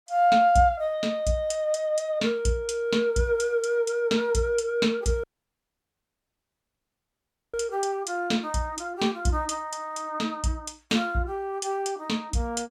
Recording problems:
audio cutting out; at 5 s for 2.5 s

